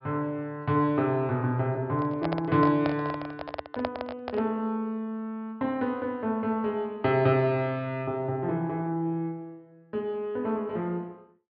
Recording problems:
treble cut off; nothing above 5.5 kHz
handling noise; from 2 to 4.5 s; peak +2 dB vs average level

